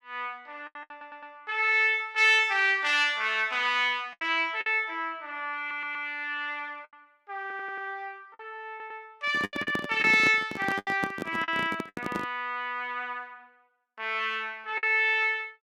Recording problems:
lost packets; 6% of the sound replaced, filled with the last packet
audio stuttering; 4 times, first at 1 s
microphone handling noise; from 9 to 12 s; peak -2 dB vs average level

